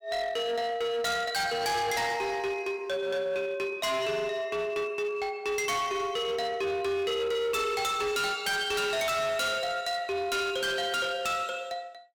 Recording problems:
distortion; hard clipping, uneven, signal-to-distortion ratio 8 dB

